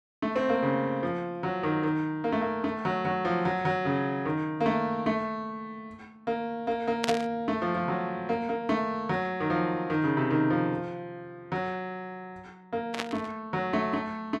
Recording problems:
static burst; at 7 s and at 13 s; peak +3 dB vs average level

